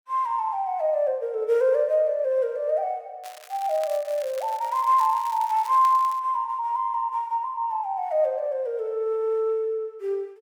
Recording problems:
crackling; from 3 to 6 s; loose cable, SNR 20 dB

